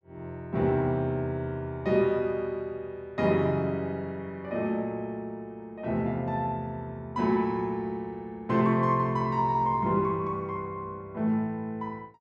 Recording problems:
none

